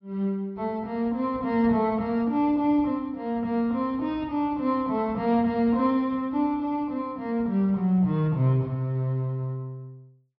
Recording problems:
treble cut off; nothing above 5.7 kHz

